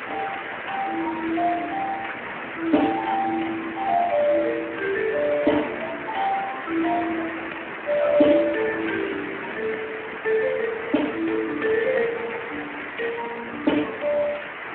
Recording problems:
phone line; 240 Hz to 3.2 kHz, Speex
hiss; SNR 7 dB
crackle; from 9 to 11 s and at 13 s; loose cable, SNR 25 dB

